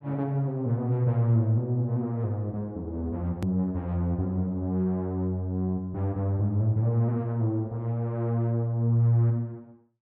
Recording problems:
click at an edit; at 3.5 s

